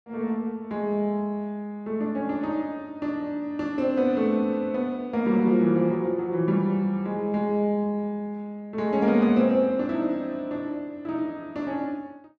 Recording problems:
none

